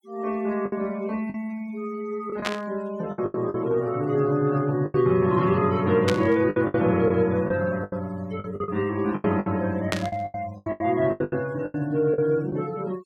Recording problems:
denoising artefacts; signal-to-artefact ratio 22 dB
packet loss; 12% of the sound replaced, filled with the last packet
static burst; at 2.5 s, at 6 s and at 10 s; peak +3 dB vs average level

